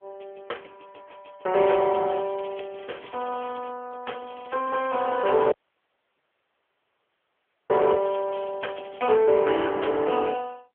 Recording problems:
phone line; 320 Hz to 3.3 kHz, AMR-NB
crackle; from 1.5 to 3.5 s and from 4 to 9 s; loose cable, SNR 24 dB
dropout; at 5.5 s for 2 s

